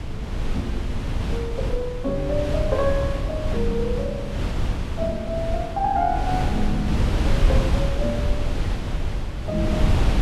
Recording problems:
wind on the microphone; below 130 Hz, SNR -1 dB

